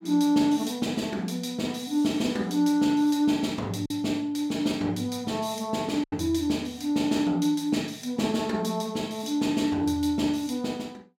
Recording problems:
lost packets; 1.1% of the sound replaced, filled with silence

